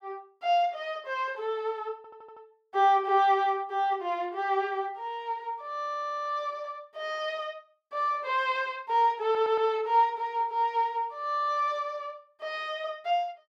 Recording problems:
audio stuttering; at 2 s, at 6 s and at 9 s

